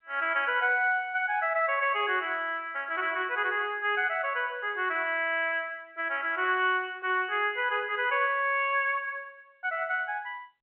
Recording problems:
telephone audio; 320 Hz to 3.3 kHz, G.711

